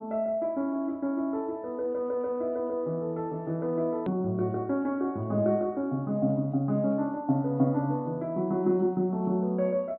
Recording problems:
low-pass filter; nothing above 4.1 kHz
click at an edit; at 4 s

